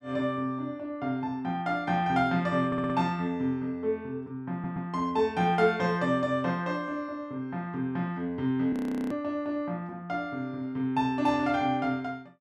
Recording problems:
stutter; at 2.5 s and at 4.5 s
frozen audio; at 8.5 s

